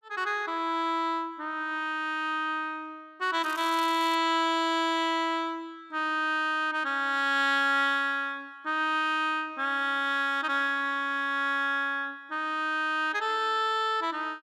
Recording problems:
crackling; at 3.5 s; loose cable, SNR 18 dB

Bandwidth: 14.5 kHz